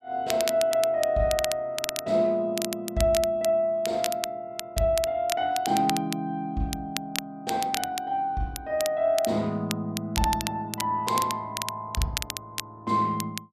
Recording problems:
crackle; vinyl, SNR 8 dB

